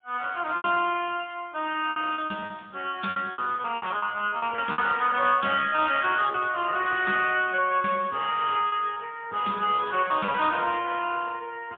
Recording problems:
telephone audio; 240 Hz to 3.4 kHz, AMR-NB, then MP3
lost packets; 9% of the sound replaced, filled with repeated pitch periods

